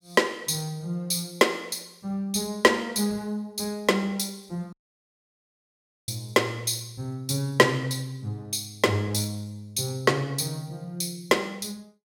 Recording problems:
dropout; at 4.5 s for 1.5 s

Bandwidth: 16.5 kHz